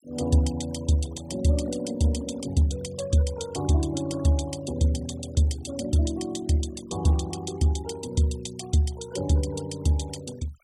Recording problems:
noise reduction artefacts; signal-to-artefact ratio 19 dB

